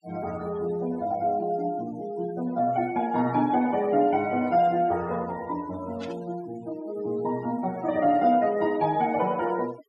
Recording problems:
denoising artefacts; signal-to-artefact ratio 22 dB
static burst; at 6 s; peak -12 dB vs average level

